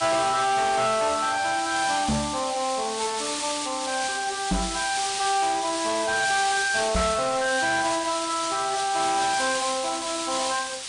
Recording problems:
lossy codec; MP3, log-spectral distance 14 dB, nothing above 9.5 kHz
distortion; soft clipping, signal-to-distortion ratio 10 dB
background hiss; slope +3 dB per octave, SNR 5 dB
microphone bump; at 2 s, at 4.5 s and at 7 s; peak +3 dB vs average level

